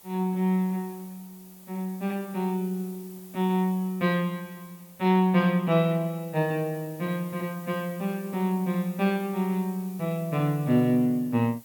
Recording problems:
background hiss; SNR 21 dB

